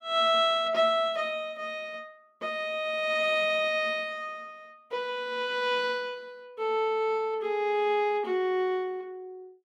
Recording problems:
none

